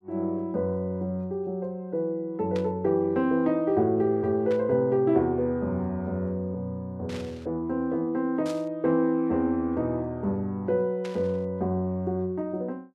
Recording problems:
static burst; 5 times, first at 2.5 s; peak -10 dB vs average level

